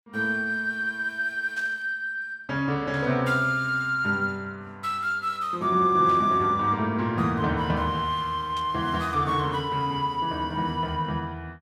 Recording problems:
static burst; 4 times, first at 1.5 s; peak -13 dB vs average level

